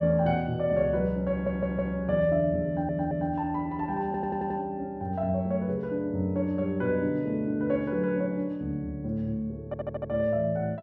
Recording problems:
audio stuttering; 4 times, first at 1.5 s

